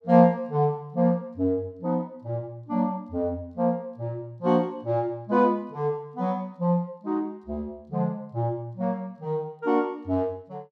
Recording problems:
none

